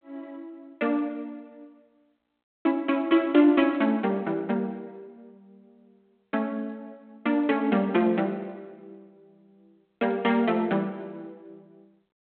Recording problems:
phone line; 220 Hz to 3.5 kHz, G.726

